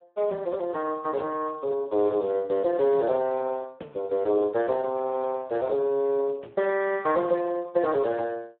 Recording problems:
phone line; 240 Hz to 3.7 kHz, Speex

